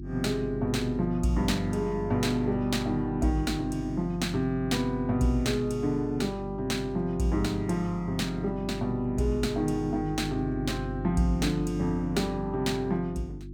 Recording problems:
hum; 50 Hz, harmonics up to 350 Hz, SNR 9 dB

